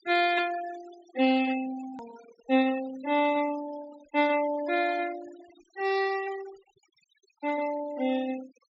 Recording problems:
low-pass filter; nothing above 8 kHz
noise reduction artefacts; signal-to-artefact ratio 18 dB
hard cut with a click; at 2 s

